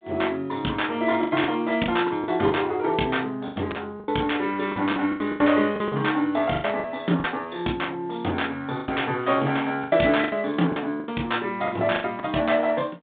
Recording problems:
phone line; 170 Hz to 3.7 kHz, G.726
lost packets; 12% of the sound replaced, filled with the last packet

